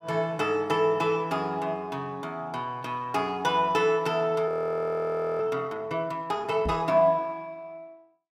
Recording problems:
audio freezing; at 4.5 s for 1 s
knock on the microphone; at 6.5 s; peak -2 dB vs average level

